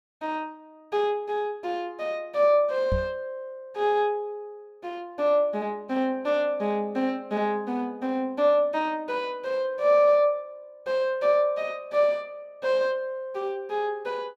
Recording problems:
knock on the microphone; at 3 s; peak 0 dB vs average level

